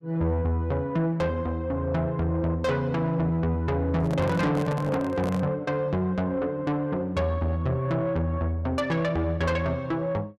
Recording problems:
distorted audio; soft clipping, signal-to-distortion ratio 11 dB
handling noise; from 4 to 5.5 s; peak -3 dB vs average level

